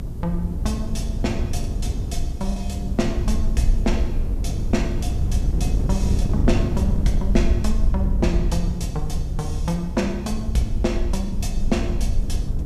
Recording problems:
background hiss; slope +4 dB per octave, SNR 29 dB
rumble; below 62 Hz, SNR 2 dB
wind noise; below 120 Hz, SNR 0 dB
packet loss; 1.3% of the sound replaced, filled with the last packet

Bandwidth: 14.5 kHz